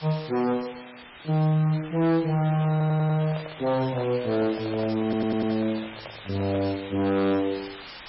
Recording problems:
lossy compression; MP3, log-spectral distance 15 dB, nothing above 5.5 kHz
distortion; hard clipping, signal-to-distortion ratio 11 dB
hiss; SNR 16 dB
microphone handling noise; from 2.5 to 6.5 s; peak -7 dB vs average level
stutter; at 2.5 s and at 5 s

